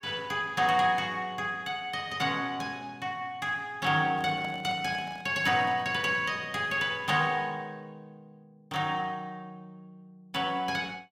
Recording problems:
handling noise; from 4 to 6 s; peak -9 dB vs average level

